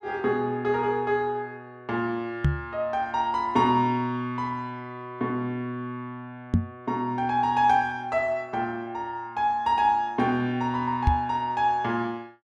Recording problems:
knock on the microphone; at 2.5 s, at 6.5 s and at 11 s; peak +8 dB vs average level

